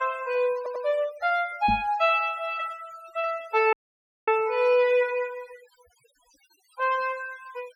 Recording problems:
noise reduction artefacts; signal-to-artefact ratio 21 dB
audio stuttering; at 0.5 s
knock on the microphone; at 1.5 s; peak -1 dB vs average level
audio cutting out; at 3.5 s for 0.5 s

